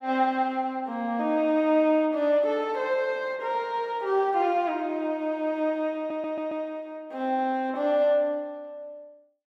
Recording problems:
stutter; at 6 s

